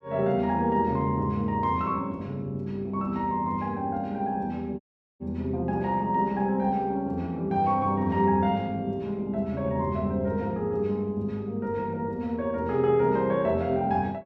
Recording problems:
dropout; at 5 s

